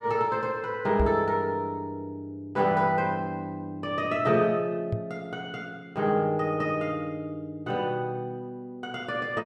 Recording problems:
knock on the microphone; at 1 s and at 5 s; peak +4 dB vs average level

